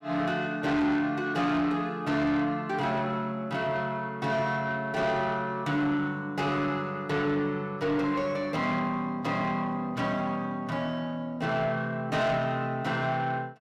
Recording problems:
distortion; soft clipping, signal-to-distortion ratio 11 dB

